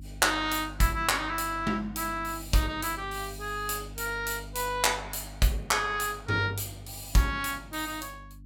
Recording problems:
electrical hum; 50 Hz, harmonics up to 300 Hz, SNR 16 dB

